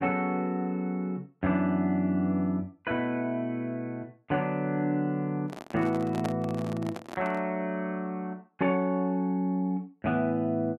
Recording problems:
microphone handling noise; from 5.5 to 7.5 s; peak -1 dB vs average level

